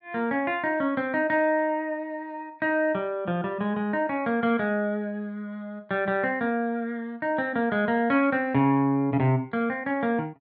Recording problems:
none

